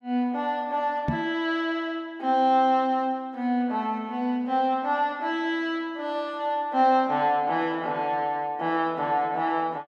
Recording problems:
knock on the microphone; at 1 s; peak +3 dB vs average level

